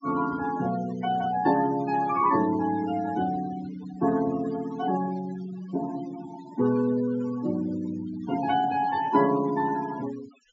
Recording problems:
treble cut off; nothing above 8 kHz
noise reduction artefacts; signal-to-artefact ratio 15 dB

